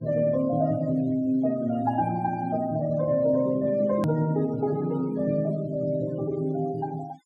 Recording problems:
denoising artefacts; signal-to-artefact ratio 24 dB
edit click; at 4 s

